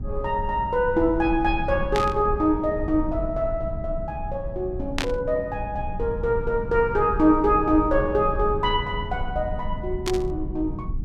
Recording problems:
hum; 50 Hz, harmonics up to 900 Hz, SNR 21 dB
rumble; below 94 Hz, SNR 9 dB
static burst; at 2 s, at 5 s and at 10 s; peak +1 dB vs average level

